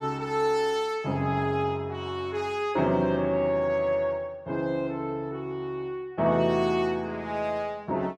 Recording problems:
none

